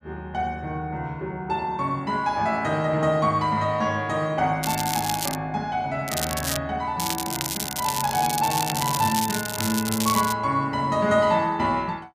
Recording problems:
crackling; at 4.5 s, at 6 s and from 7 to 10 s; loose cable, SNR 4 dB

